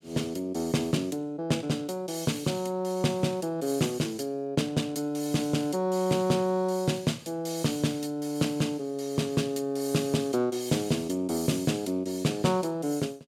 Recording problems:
none

